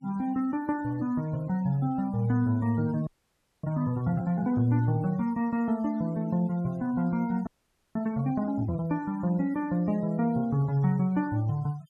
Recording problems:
denoising artefacts; signal-to-artefact ratio 24 dB
frozen audio; at 3 s for 0.5 s and at 7.5 s

